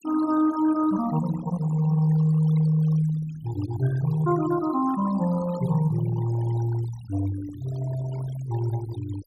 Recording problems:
denoising artefacts; signal-to-artefact ratio 17 dB

